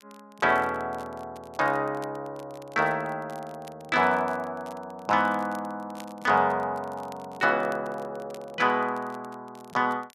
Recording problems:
crackle; vinyl, SNR 27 dB

